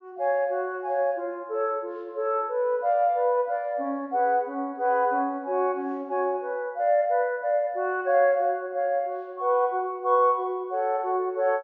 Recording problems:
treble cut off; nothing above 7 kHz

